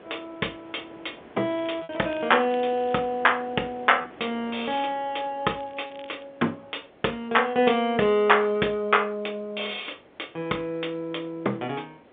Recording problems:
phone line; 260 Hz to 3.6 kHz, G.711
wind on the microphone; below 950 Hz, SNR 23 dB
packet loss; 1% of the sound replaced, filled with repeated pitch periods
crackle; from 1.5 to 3 s and at 5.5 s; loose cable, SNR 25 dB

